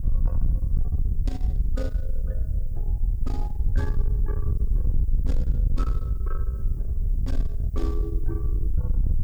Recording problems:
distorted audio; soft clipping, signal-to-distortion ratio 9 dB
hiss; SNR 22 dB
wind on the microphone; below 64 Hz, SNR -12 dB

